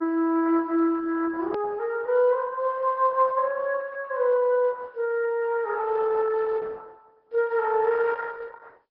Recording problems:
treble cut off; nothing above 5.3 kHz
codec artefacts; Opus, log-spectral distance 3 dB
click at an edit; at 1.5 s

